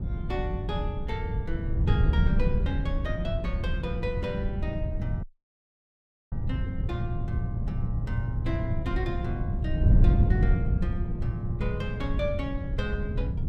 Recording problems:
wind noise; below 120 Hz, SNR -6 dB
audio cutting out; at 5 s for 1 s

